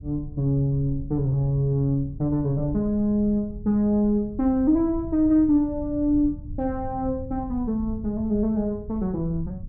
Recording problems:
rumble; below 100 Hz, SNR 14 dB

